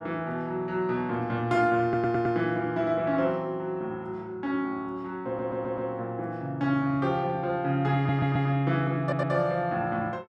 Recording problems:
stutter; 4 times, first at 2 s

